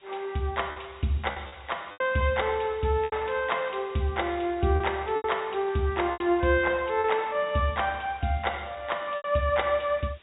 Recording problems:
low-pass filter; nothing above 3.8 kHz
hiss; SNR 27 dB
packet loss; 6% of the sound replaced, filled with repeated pitch periods

